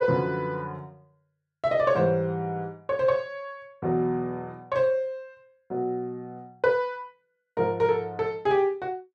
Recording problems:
none

